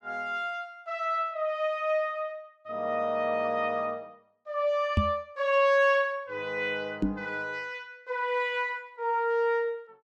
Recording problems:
knock on the microphone; at 5 s and at 7 s; peak +7 dB vs average level

